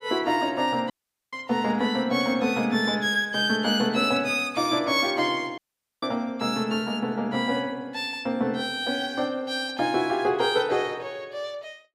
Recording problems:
audio cutting out; at 1 s and at 5.5 s

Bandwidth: 15.5 kHz